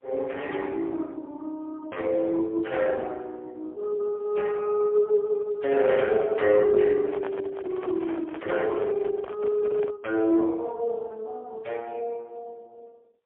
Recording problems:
telephone audio; 300 Hz to 3.4 kHz, AMR-NB, then MP3
handling noise; from 7 to 10 s; peak -5 dB vs average level

